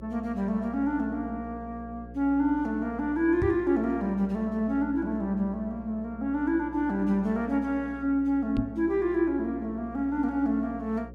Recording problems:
hum; 60 Hz, harmonics up to 540 Hz, SNR 17 dB
microphone thump; at 3.5 s and at 8.5 s; peak +1 dB vs average level

